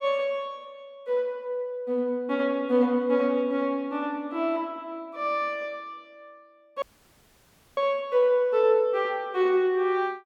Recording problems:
audio cutting out; at 7 s for 1 s

